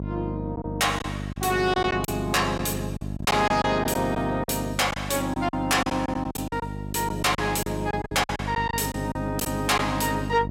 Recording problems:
distorted audio; soft clipping, signal-to-distortion ratio 11 dB
electrical hum; 50 Hz, harmonics up to 700 Hz, SNR 8 dB
packet loss; 10% of the sound replaced, filled with silence

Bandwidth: 16 kHz